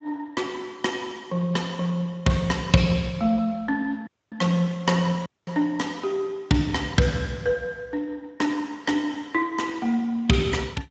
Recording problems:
codec artefacts; Speex, log-spectral distance 3 dB, nothing above 7.6 kHz
audio cutting out; at 4 s and at 5.5 s

